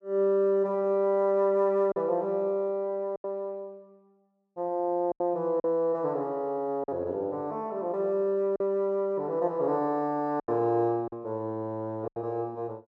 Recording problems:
lost packets; 4% of the sound replaced, filled with silence

